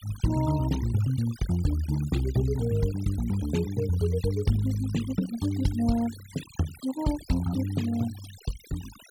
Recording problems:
noise reduction artefacts; signal-to-artefact ratio 17 dB

